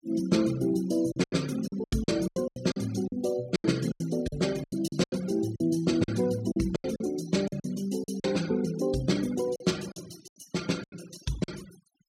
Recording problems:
denoising artefacts; signal-to-artefact ratio 16 dB
lost packets; 14% of the sound replaced, filled with silence

